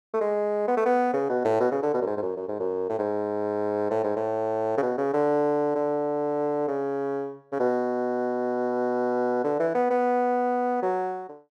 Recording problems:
none

